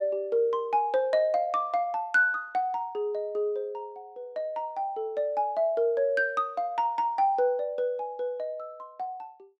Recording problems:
none

